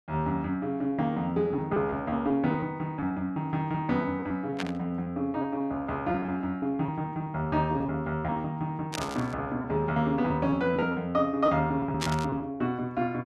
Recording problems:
packet loss; 11% of the sound replaced, filled with repeated pitch periods
burst of static; at 4.5 s, at 9 s and at 12 s; peak +2 dB vs average level

